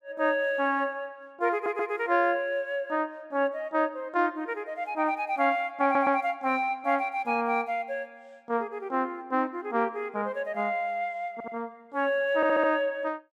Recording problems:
audio stuttering; 4 times, first at 1.5 s

